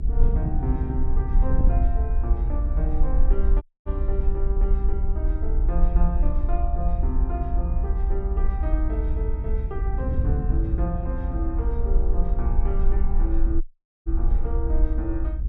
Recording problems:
low-frequency rumble; below 54 Hz, SNR -7 dB
wind noise; below 110 Hz, SNR -2 dB
dropout; at 3.5 s and at 14 s

